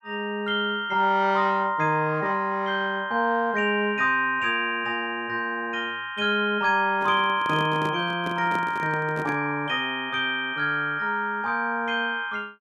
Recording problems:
handling noise; from 7 to 9.5 s; peak -5 dB vs average level

